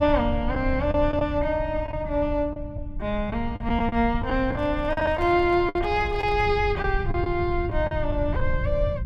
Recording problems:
low-frequency rumble; below 96 Hz, SNR 7 dB
packet loss; 7% of the sound replaced, filled with the last packet
microphone handling noise; from 4.5 to 6.5 s; peak -11 dB vs average level

